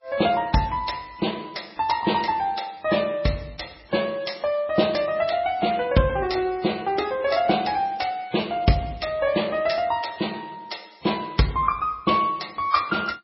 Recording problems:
lossy codec; MP3, log-spectral distance 6 dB, nothing above 5.5 kHz

